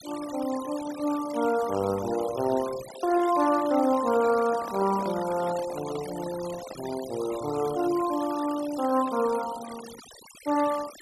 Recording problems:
denoising artefacts; signal-to-artefact ratio 15 dB
microphone handling noise; from 3 to 7 s; peak -8 dB vs average level

